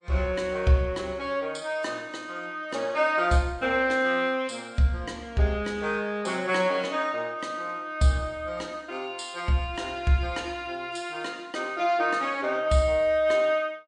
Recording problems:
lossy compression; MP3, log-spectral distance 2 dB, nothing above 9 kHz

